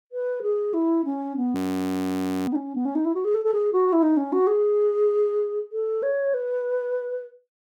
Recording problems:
frozen audio; at 1.5 s for 1 s

